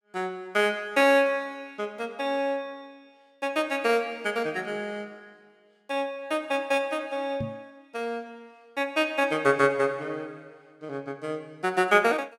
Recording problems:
microphone thump; at 7.5 s; peak -3 dB vs average level

